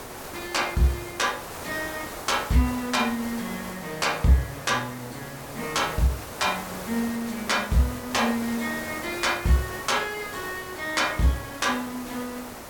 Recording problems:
background hiss; SNR 10 dB

